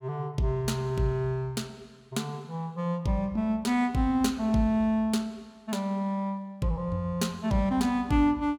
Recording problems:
none

